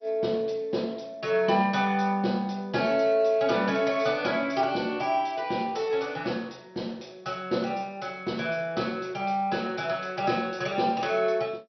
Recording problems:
codec artefacts; MP2, log-spectral distance 3 dB, nothing above 5.8 kHz

